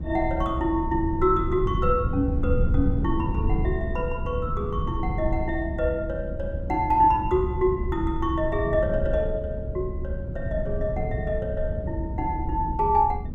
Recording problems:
rumble; below 130 Hz, SNR 3 dB

